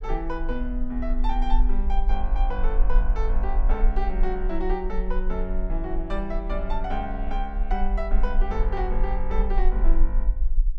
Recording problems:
low-frequency rumble; below 38 Hz, strongest tone 18 Hz, SNR -4 dB

